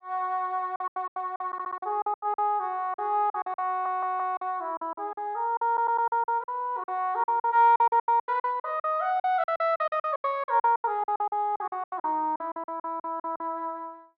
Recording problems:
packet loss; 19% of the sound replaced, filled with silence
stutter; at 1.5 s, at 3.5 s and at 5.5 s

